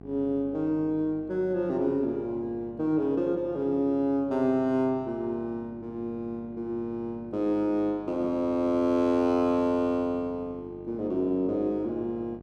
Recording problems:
hum; 50 Hz, harmonics up to 1.2 kHz, SNR 20 dB

